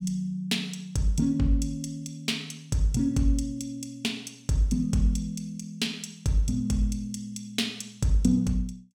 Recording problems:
none

